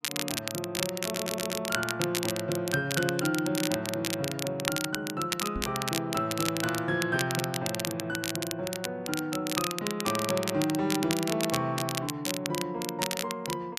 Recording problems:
crackling; vinyl, SNR 3 dB
stutter; at 1 s
knock on the microphone; at 5.5 s; peak -2 dB vs average level

